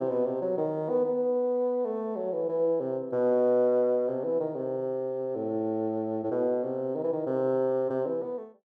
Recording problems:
none

